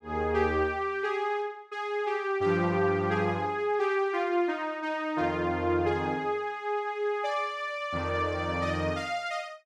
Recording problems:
none

